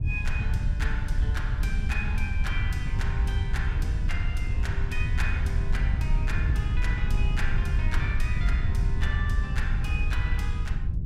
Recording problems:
wind noise; below 86 Hz, SNR -8 dB

